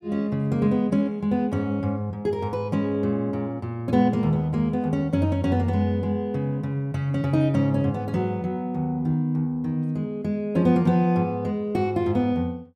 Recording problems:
none

